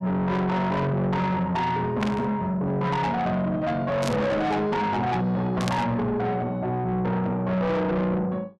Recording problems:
distortion; soft clipping, signal-to-distortion ratio 7 dB
burst of static; at 2 s, at 4 s and at 5.5 s; peak -2 dB vs average level

